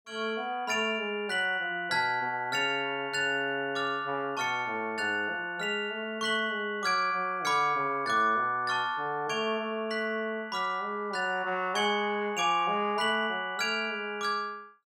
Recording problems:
none

